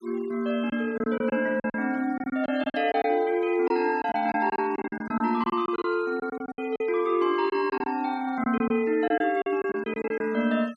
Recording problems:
noise reduction artefacts; signal-to-artefact ratio 26 dB
lost packets; 12% of the sound replaced, filled with silence

